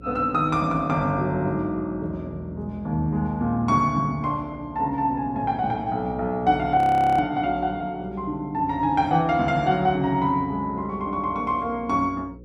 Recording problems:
electrical hum; 60 Hz, harmonics up to 540 Hz, SNR 21 dB
frozen audio; at 7 s

